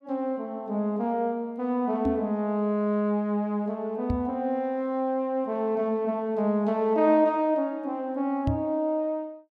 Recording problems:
microphone bump; at 2 s, at 4 s and at 8.5 s; peak +3 dB vs average level

